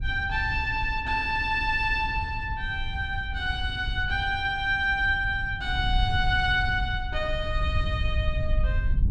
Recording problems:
wind on the microphone; below 84 Hz, SNR 6 dB

